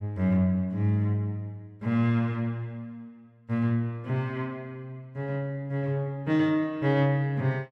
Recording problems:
none

